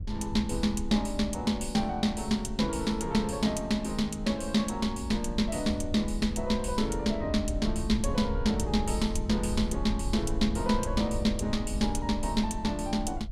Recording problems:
wind on the microphone; below 76 Hz, SNR 8 dB

